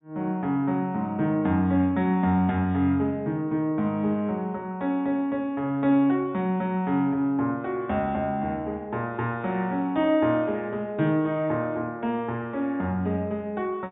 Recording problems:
treble cut off; nothing above 4 kHz

